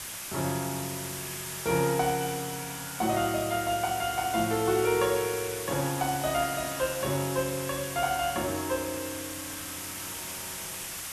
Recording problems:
hiss; slope 0 dB per octave, SNR 6 dB

